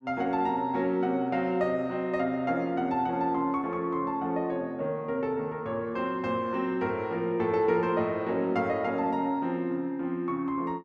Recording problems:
none

